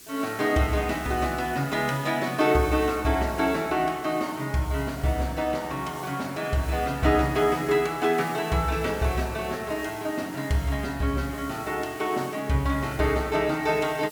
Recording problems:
hiss; SNR 19 dB

